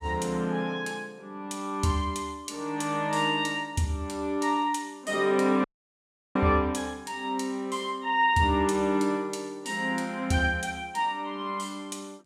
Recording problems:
audio cutting out; at 5.5 s for 0.5 s

